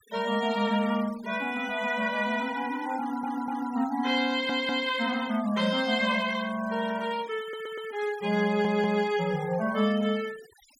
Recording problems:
denoising artefacts; signal-to-artefact ratio 20 dB
audio stuttering; 4 times, first at 3 s

